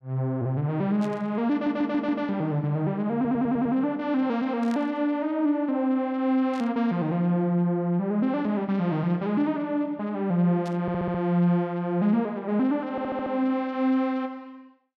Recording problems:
burst of static; 4 times, first at 1 s; peak -13 dB vs average level
audio stuttering; 4 times, first at 1.5 s

